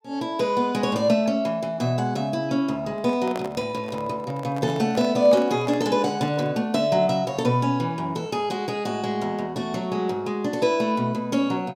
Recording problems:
microphone handling noise; from 3 to 6.5 s; peak -4 dB vs average level

